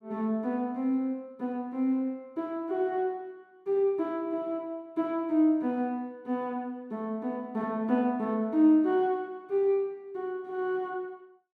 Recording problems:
none

